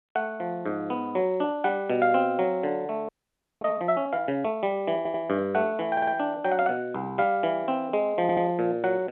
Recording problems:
telephone audio; 260 Hz to 3.5 kHz, G.711
frozen audio; at 3 s for 0.5 s
stutter; at 5 s, at 6 s and at 8 s

